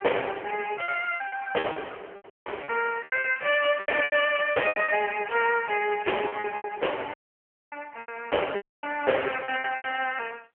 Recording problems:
telephone audio; 340 Hz to 3.2 kHz, AMR-NB
distortion; soft clipping, signal-to-distortion ratio 10 dB
packet loss; 13% of the sound replaced, filled with repeated pitch periods
dropout; at 2.5 s, at 7 s for 0.5 s and at 8.5 s

